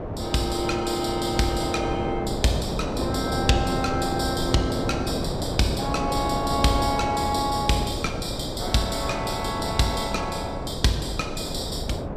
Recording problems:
wind noise; below 590 Hz, SNR 4 dB

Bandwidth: 14.5 kHz